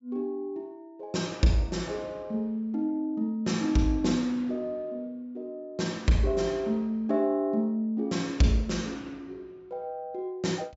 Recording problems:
treble cut off; nothing above 8 kHz

